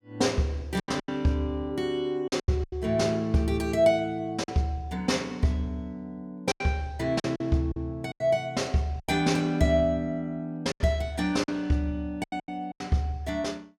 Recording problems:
packet loss; 8% of the sound replaced, filled with silence

